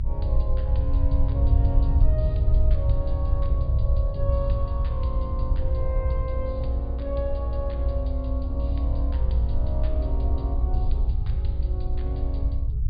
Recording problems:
low-pass filter; nothing above 4.8 kHz
low-frequency rumble; below 74 Hz, SNR -10 dB

